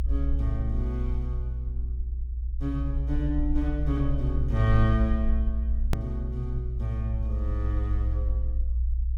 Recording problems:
low-frequency rumble; below 60 Hz, strongest tone 60 Hz, SNR -2 dB
click at an edit; at 6 s

